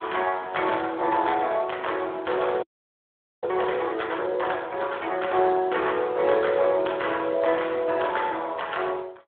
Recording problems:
phone line; 280 Hz to 3.5 kHz, Speex
audio freezing; at 2.5 s for 1 s

